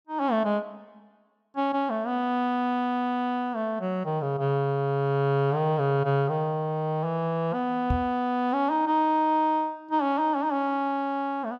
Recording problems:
microphone thump; at 8 s; peak +3 dB vs average level

